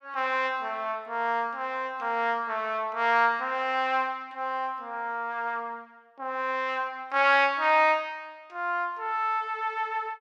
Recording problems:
none

